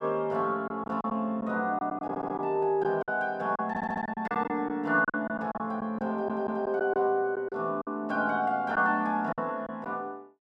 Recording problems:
lost packets; 9% of the sound replaced, filled with silence
audio stuttering; at 2 s, at 3.5 s and at 6 s

